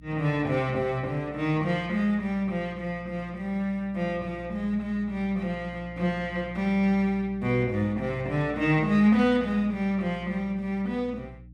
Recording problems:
hum; 60 Hz, harmonics up to 300 Hz, SNR 19 dB

